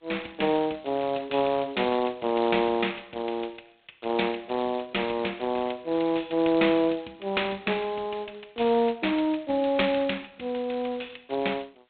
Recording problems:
telephone audio; 260 Hz to 3.8 kHz, G.726

